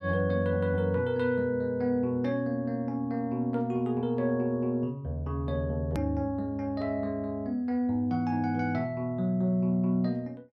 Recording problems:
hard cut with a click; at 6 s

